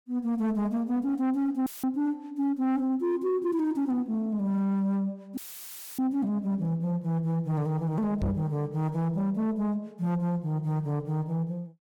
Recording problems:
distorted audio; soft clipping, signal-to-distortion ratio 10 dB
audio cutting out; at 1.5 s and at 5.5 s for 0.5 s; filled with static
knock on the microphone; at 8 s; peak +4 dB vs average level

